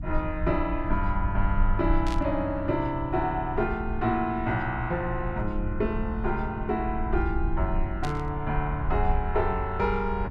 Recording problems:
electrical hum; 60 Hz, harmonics up to 300 Hz, SNR 13 dB
low-frequency rumble; below 60 Hz, SNR 6 dB
static burst; at 2 s and at 8 s; peak -6 dB vs average level

